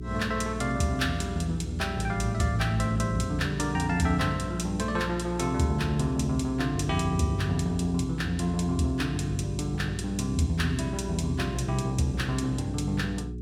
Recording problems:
hum; 60 Hz, harmonics up to 420 Hz, SNR 9 dB

